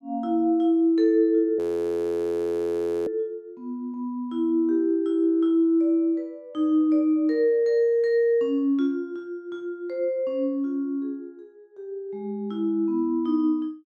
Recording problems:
audio freezing; at 1.5 s for 1.5 s

